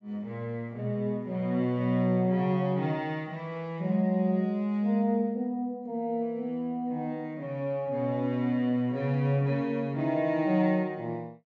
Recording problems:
treble cut off; nothing above 8 kHz

